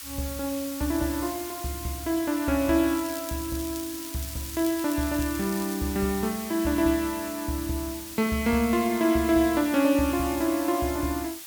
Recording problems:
hiss; slope +3 dB per octave, SNR 10 dB
crackling; from 3 to 6 s; loose cable, SNR 16 dB

